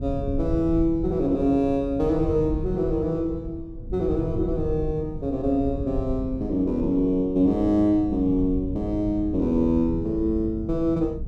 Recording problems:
low-frequency rumble; below 140 Hz, SNR 14 dB
wind noise; below 110 Hz, SNR 12 dB

